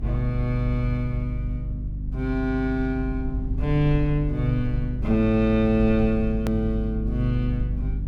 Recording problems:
hum; 50 Hz, harmonics up to 300 Hz, SNR 6 dB
low-frequency rumble; below 66 Hz, SNR 12 dB
click at an edit; at 6.5 s

